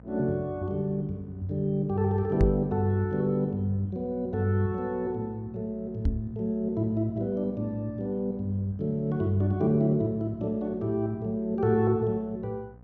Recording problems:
hum; 60 Hz, harmonics up to 1 kHz, SNR 22 dB
knock on the microphone; at 2.5 s and at 6 s; peak +6 dB vs average level

